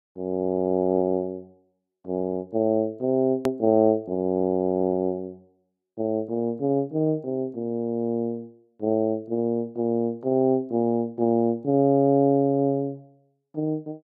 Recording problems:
click at an edit; at 3.5 s

